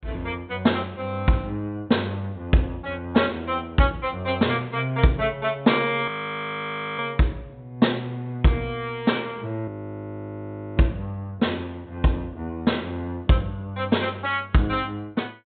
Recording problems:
treble missing; nothing above 4 kHz
frozen audio; at 6 s for 1 s and at 9.5 s for 1 s

